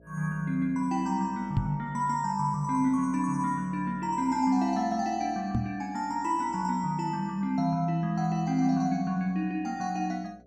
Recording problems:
hum; 60 Hz, harmonics up to 660 Hz, SNR 26 dB
knock on the microphone; at 1.5 s and at 5.5 s; peak +5 dB vs average level

